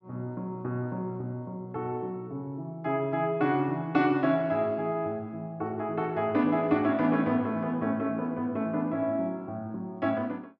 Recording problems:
none

